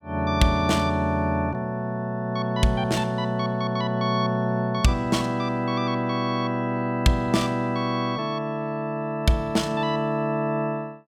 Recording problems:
none

